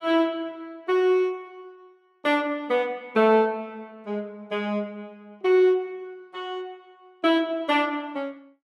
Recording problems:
none

